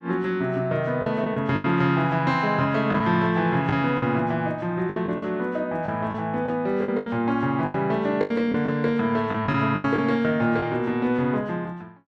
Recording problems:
packet loss; 8% of the sound replaced, filled with the last packet

